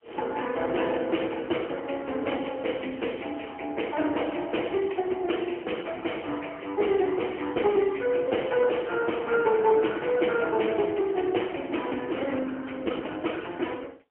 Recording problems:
phone line; 260 Hz to 3.2 kHz, AMR-NB, then MP3

